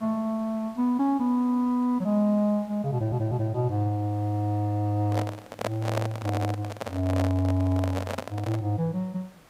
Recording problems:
background hiss; slope -4 dB per octave, SNR 27 dB
audio stuttering; at 3 s and at 6.5 s
microphone handling noise; from 5 to 8.5 s; peak +2 dB vs average level

